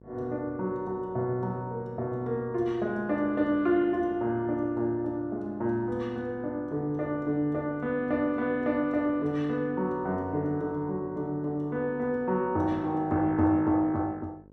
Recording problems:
hum; 50 Hz, harmonics up to 1.1 kHz, SNR 25 dB

